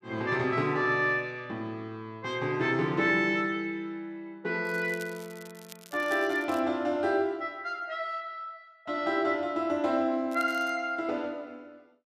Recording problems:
crackling; from 4.5 to 6.5 s and at 10 s; loose cable, SNR 21 dB

